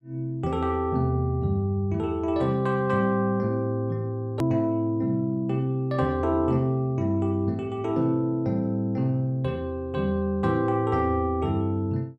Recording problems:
click at an edit; at 4.5 s

